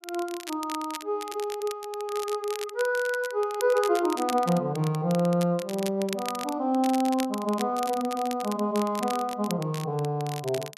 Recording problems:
crackling; vinyl, SNR 13 dB

